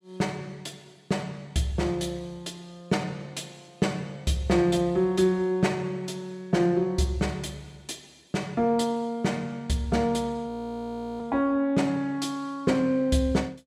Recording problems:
audio freezing; at 10 s for 0.5 s

